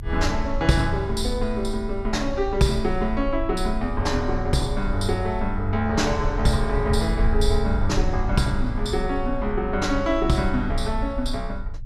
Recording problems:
rumble; below 54 Hz, strongest tone 22 Hz, SNR 6 dB

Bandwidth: 14.5 kHz